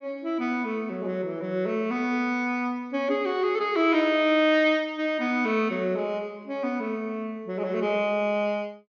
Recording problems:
treble cut off; nothing above 6.5 kHz

